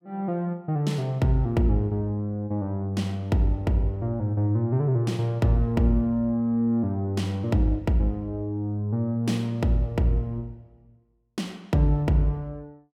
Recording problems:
none

